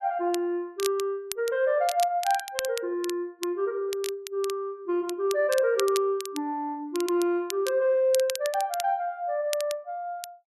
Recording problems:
crackling; vinyl, SNR 11 dB

